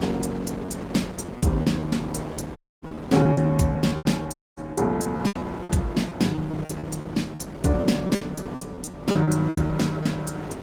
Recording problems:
lossy codec; Opus, log-spectral distance 4 dB, nothing above 19 kHz
hum; 50 Hz, harmonics up to 300 Hz, SNR 18 dB
wind noise; below 770 Hz, SNR 13 dB
lost packets; 14% of the sound replaced, filled with repeated pitch periods
audio cutting out; at 2.5 s and at 4.5 s

